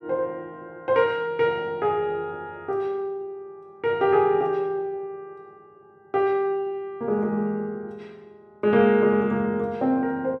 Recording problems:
none

